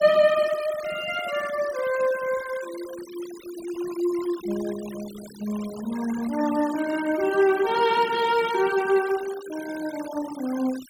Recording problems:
noise reduction artefacts; signal-to-artefact ratio 16 dB

